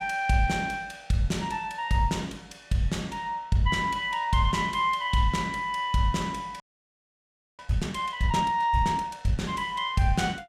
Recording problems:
frozen audio; at 6.5 s for 1 s

